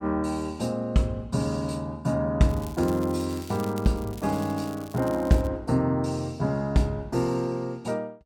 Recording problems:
crackle; from 2.5 to 5.5 s; loose cable, SNR 20 dB

